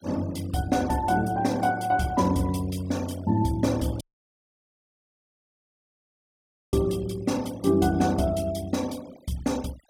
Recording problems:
noise reduction artefacts; signal-to-artefact ratio 21 dB
dropout; at 4 s for 2.5 s

